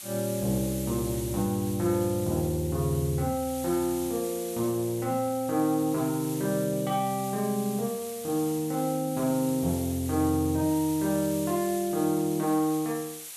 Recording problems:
hiss; slope +2 dB per octave, SNR 11 dB

